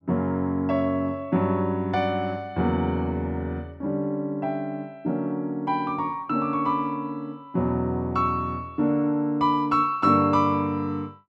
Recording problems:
none

